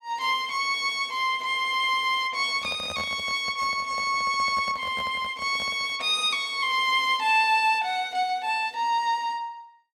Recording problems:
handling noise; from 2.5 to 6 s; peak -9 dB vs average level

